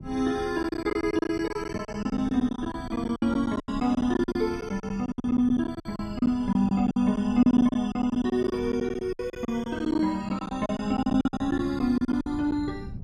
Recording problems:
wind noise; below 190 Hz, SNR 16 dB
lost packets; 18% of the sound replaced, filled with silence

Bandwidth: 14.5 kHz